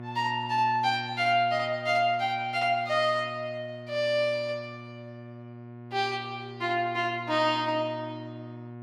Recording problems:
hum; 60 Hz, harmonics up to 1.8 kHz, SNR 15 dB

